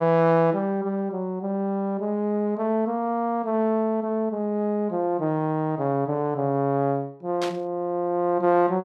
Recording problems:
static burst; at 7.5 s; peak -4 dB vs average level

